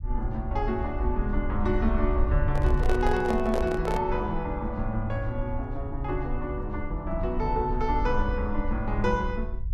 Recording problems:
rumble; below 62 Hz, SNR 3 dB
microphone handling noise; from 2.5 to 4 s; peak +2 dB vs average level

